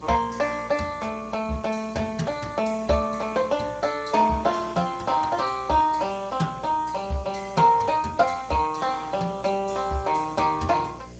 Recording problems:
lossy compression; Speex, log-spectral distance 9 dB, nothing above 7.6 kHz
electrical hum; 60 Hz, harmonics up to 660 Hz, SNR 21 dB
hiss; SNR 27 dB

